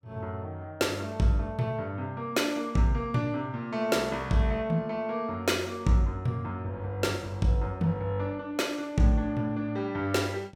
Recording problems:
none

